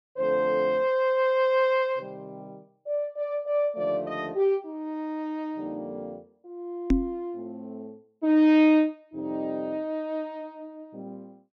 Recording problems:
knock on the microphone; at 7 s; peak +7 dB vs average level

